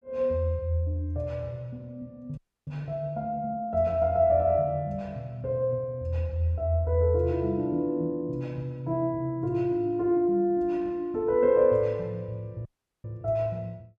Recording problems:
audio cutting out; at 2.5 s and at 13 s

